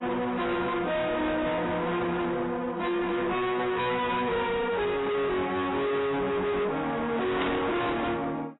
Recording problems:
codec artefacts; AAC, log-spectral distance 3 dB, nothing above 3.9 kHz
distortion; hard clipping, uneven, signal-to-distortion ratio 6 dB
burst of static; at 7.5 s; peak -2 dB vs average level

